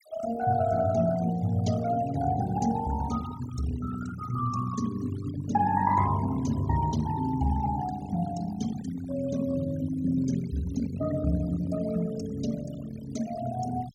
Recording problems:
denoising artefacts; signal-to-artefact ratio 16 dB

